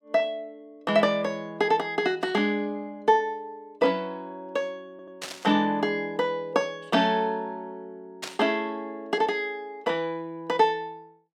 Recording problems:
stutter; at 5 s
burst of static; at 5 s and at 8 s; peak -3 dB vs average level

